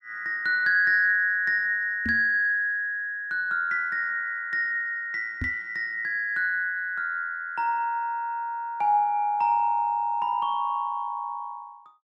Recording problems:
microphone bump; at 2 s and at 5.5 s; peak -3 dB vs average level

